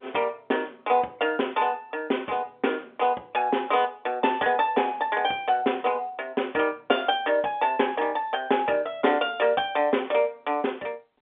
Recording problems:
telephone audio; 240 Hz to 3.6 kHz, G.711

